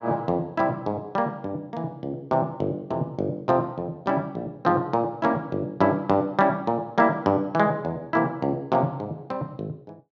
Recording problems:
none

